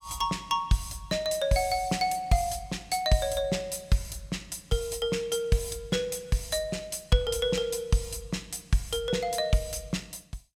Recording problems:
none

